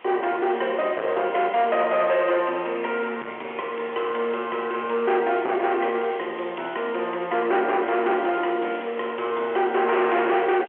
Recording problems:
telephone audio; 300 Hz to 3.2 kHz, G.711
distorted audio; soft clipping, signal-to-distortion ratio 8 dB
background hiss; SNR 25 dB

